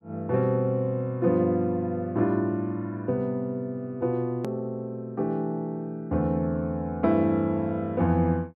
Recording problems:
click at an edit; at 4.5 s

